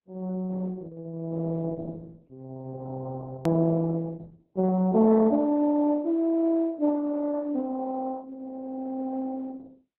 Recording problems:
codec artefacts; MP3, then Opus, log-spectral distance 2 dB, nothing above 13.1 kHz
click at an edit; at 3.5 s

